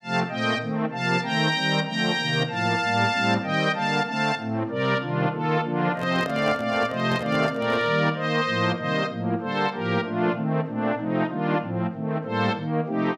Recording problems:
handling noise; from 6 to 8 s; peak -5 dB vs average level

